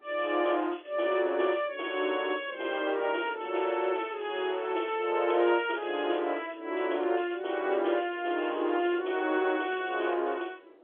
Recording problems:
telephone audio; 300 Hz to 3.4 kHz, G.711
wind on the microphone; below 580 Hz, SNR 21 dB

